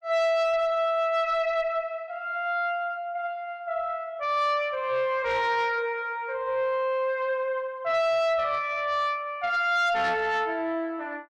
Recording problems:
distortion; soft clipping, signal-to-distortion ratio 10 dB

